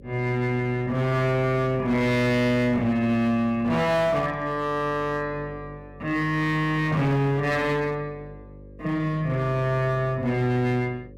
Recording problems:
distorted audio; hard clipping, uneven, signal-to-distortion ratio 10 dB
hum; 50 Hz, harmonics up to 550 Hz, SNR 20 dB

